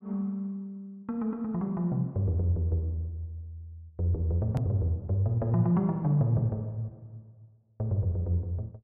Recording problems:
hard cut with a click; at 4.5 s

